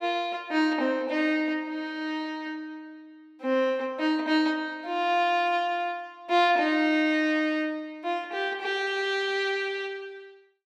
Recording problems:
none

